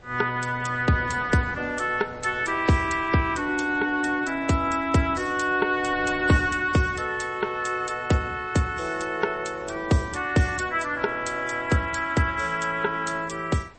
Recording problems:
lossy codec; MP3, log-spectral distance 4 dB, nothing above 8.2 kHz
wind noise; below 1 kHz, SNR 21 dB

